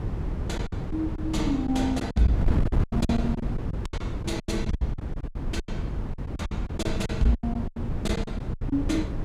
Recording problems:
wind noise; below 170 Hz, SNR 1 dB
packet loss; 17% of the sound replaced, filled with silence

